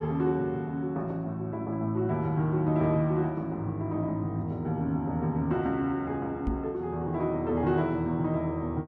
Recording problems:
microphone thump; at 6.5 s; peak +2 dB vs average level

